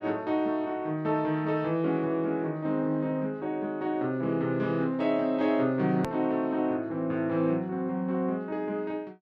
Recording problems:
hard cut with a click; at 6 s

